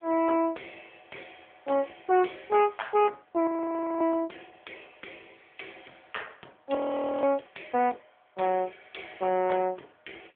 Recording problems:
telephone audio; 280 Hz to 3.5 kHz, AMR-NB
distortion; soft clipping, signal-to-distortion ratio 11 dB
frozen audio; at 3.5 s for 0.5 s and at 7 s

